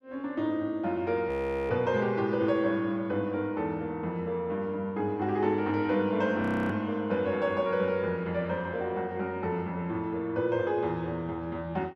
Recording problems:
frozen audio; at 1.5 s and at 6.5 s

